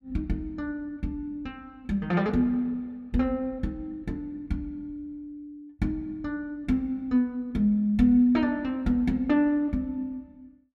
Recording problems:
none

